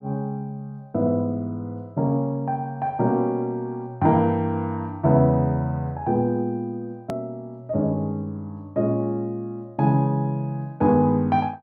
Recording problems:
hard cut with a click; at 7 s

